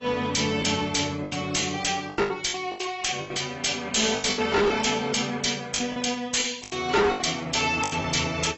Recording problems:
codec artefacts; AAC, log-spectral distance 7 dB, nothing above 7.8 kHz
distortion; hard clipping, uneven, signal-to-distortion ratio 7 dB
packet loss; 13% of the sound replaced, filled with the last packet

